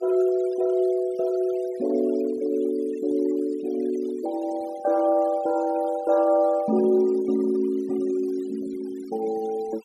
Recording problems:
denoising artefacts; signal-to-artefact ratio 22 dB

